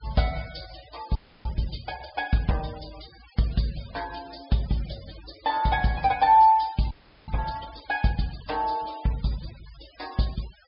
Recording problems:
low-pass filter; nothing above 5.5 kHz
noise reduction artefacts; signal-to-artefact ratio 20 dB
frozen audio; at 1 s and at 7 s

